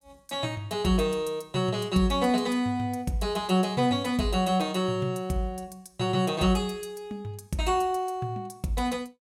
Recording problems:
none

